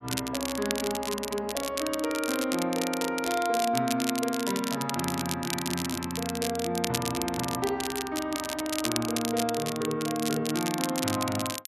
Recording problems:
crackling; vinyl, SNR 4 dB

